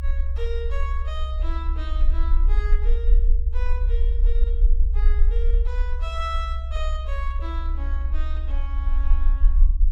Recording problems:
rumble; below 50 Hz, SNR -12 dB

